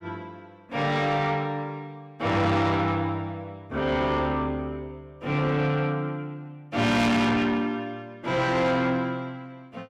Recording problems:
distorted audio; soft clipping, signal-to-distortion ratio 8 dB

